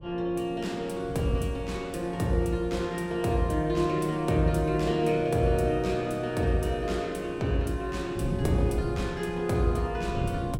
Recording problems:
wind noise; below 180 Hz, SNR 12 dB

